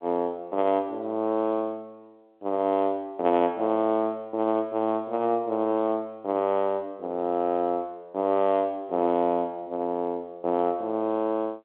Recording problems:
telephone audio; 240 Hz to 3.7 kHz, G.711

